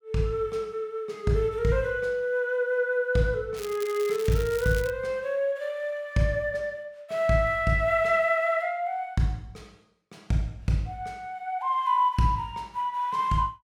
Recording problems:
crackle; from 3.5 to 5 s; loose cable, SNR 16 dB

